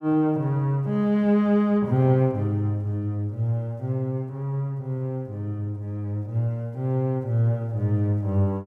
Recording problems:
none

